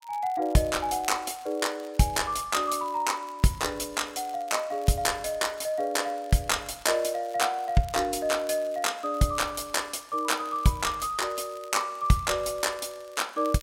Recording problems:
crackle; vinyl, SNR 26 dB

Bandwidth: 16 kHz